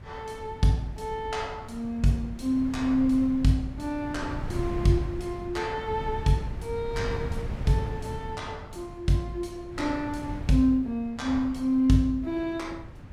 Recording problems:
wind noise; below 160 Hz, SNR 11 dB

